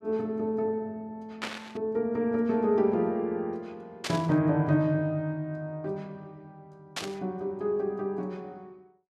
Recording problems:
burst of static; at 1.5 s, at 4 s and at 7 s; peak 0 dB vs average level

